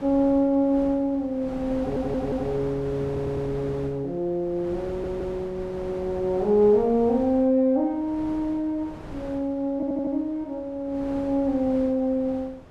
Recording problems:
wind on the microphone; below 630 Hz, SNR 15 dB
audio stuttering; 4 times, first at 2 s

